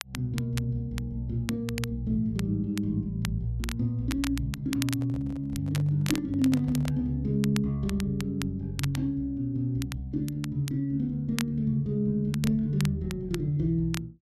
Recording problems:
crackling; vinyl, SNR 13 dB
handling noise; from 5 to 7 s; peak -8 dB vs average level

